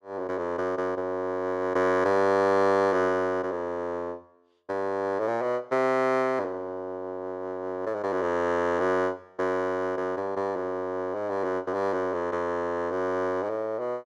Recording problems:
none

